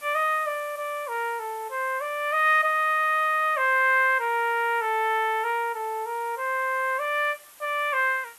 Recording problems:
background hiss; slope 0 dB per octave, SNR 23 dB

